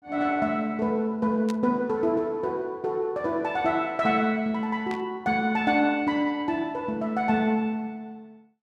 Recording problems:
static burst; at 1.5 s and at 5 s; peak -9 dB vs average level

